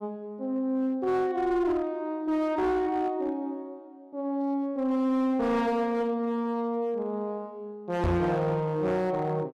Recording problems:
distortion; hard clipping, uneven, signal-to-distortion ratio 11 dB
knock on the microphone; at 8 s; peak +5 dB vs average level

